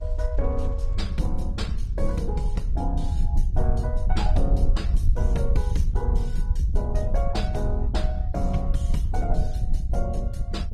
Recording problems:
codec artefacts; Opus, then Opus, log-spectral distance 2 dB, nothing above 17.7 kHz
rumble; below 66 Hz, SNR -6 dB

